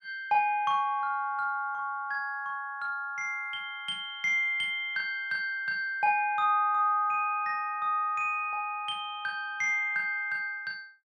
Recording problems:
none

